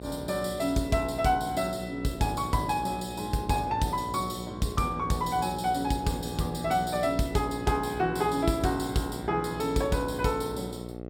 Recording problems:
hum; 60 Hz, harmonics up to 1.4 kHz, SNR 11 dB

